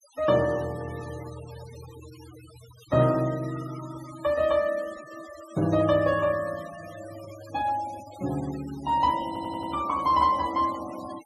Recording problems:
noise reduction artefacts; signal-to-artefact ratio 19 dB
audio stuttering; at 9.5 s

